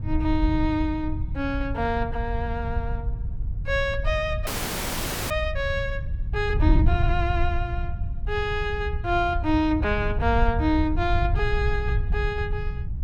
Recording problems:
wind on the microphone; below 88 Hz, SNR 2 dB
frozen audio; at 4.5 s for 1 s

